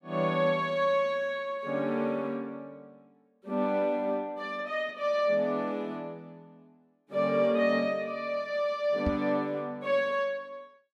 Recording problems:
knock on the microphone; at 9 s; peak +1 dB vs average level

